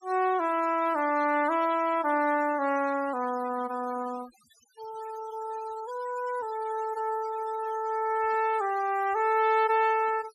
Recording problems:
denoising artefacts; signal-to-artefact ratio 19 dB

